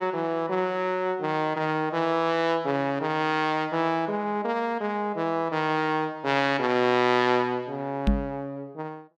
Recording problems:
microphone bump; at 8 s; peak +6 dB vs average level

